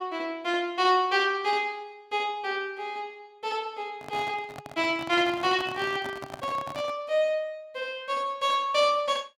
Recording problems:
microphone handling noise; from 4 to 7 s; peak -6 dB vs average level

